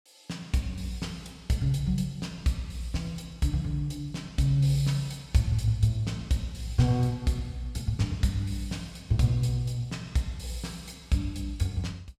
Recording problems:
none

